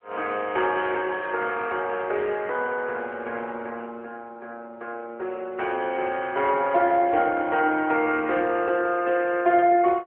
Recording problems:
phone line; 300 Hz to 2.6 kHz, AMR-NB

